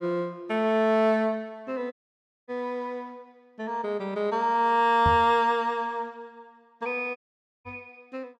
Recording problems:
audio cutting out; at 2 s for 0.5 s and at 7 s
microphone bump; at 2.5 s, at 5 s and at 7.5 s; peak +1 dB vs average level

